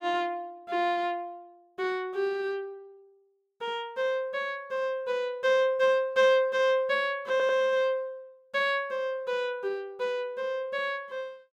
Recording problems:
stutter; at 7.5 s

